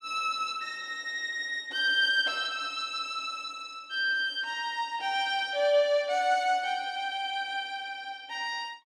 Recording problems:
none

